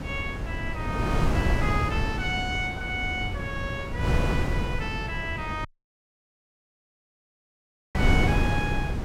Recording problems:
wind noise; below 270 Hz, SNR -3 dB
audio cutting out; at 5.5 s for 2.5 s

